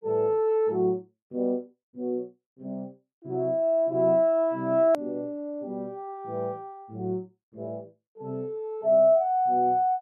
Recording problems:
edit click; at 5 s

